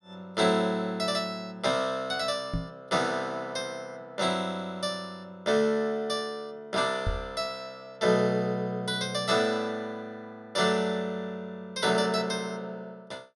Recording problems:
knock on the microphone; at 2.5 s and at 7 s; peak +1 dB vs average level

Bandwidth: 12.5 kHz